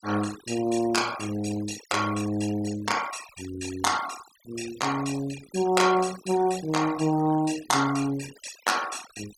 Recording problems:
denoising artefacts; signal-to-artefact ratio 14 dB

